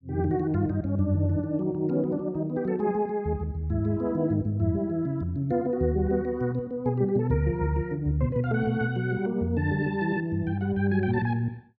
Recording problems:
none

